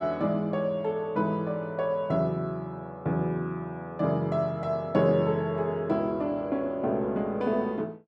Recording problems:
none

